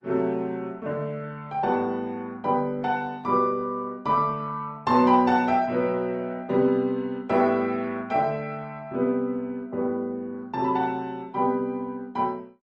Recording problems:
lossy compression; Opus, then MP3, log-spectral distance 2 dB, nothing above 8.7 kHz

